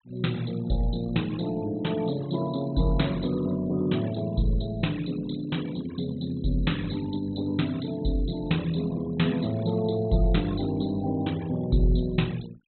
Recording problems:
low-pass filter; nothing above 4.1 kHz
denoising artefacts; signal-to-artefact ratio 20 dB

